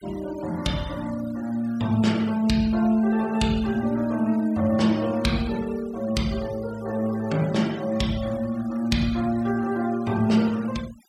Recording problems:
denoising artefacts; signal-to-artefact ratio 20 dB

